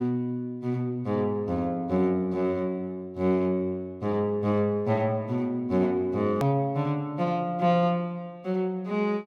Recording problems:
edit click; at 6.5 s

